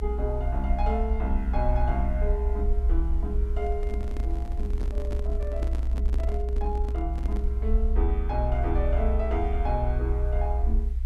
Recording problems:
hiss; SNR 29 dB
low-frequency rumble; below 62 Hz, SNR -5 dB
microphone handling noise; from 3.5 to 7.5 s; peak -1 dB vs average level

